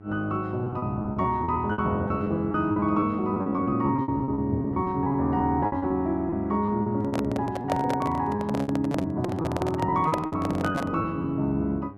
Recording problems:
electrical hum; 50 Hz, harmonics up to 1.2 kHz, SNR 19 dB
lost packets; 15% of the sound replaced, filled with repeated pitch periods
handling noise; from 7 to 11 s; peak +2 dB vs average level

